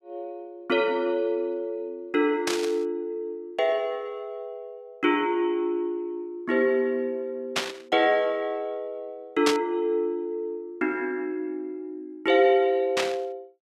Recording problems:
static burst; 4 times, first at 2.5 s; peak +5 dB vs average level

